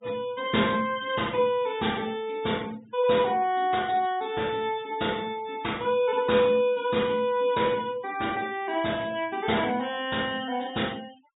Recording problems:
treble cut off; nothing above 4 kHz
noise reduction artefacts; signal-to-artefact ratio 21 dB

